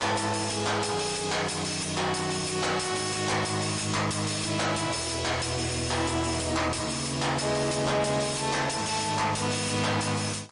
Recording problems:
lossy compression; MP3, log-spectral distance 9 dB, nothing above 10.4 kHz
distorted audio; soft clipping, signal-to-distortion ratio 7 dB

